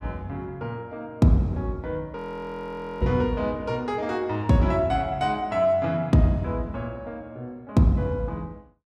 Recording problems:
audio freezing; at 2 s for 1 s

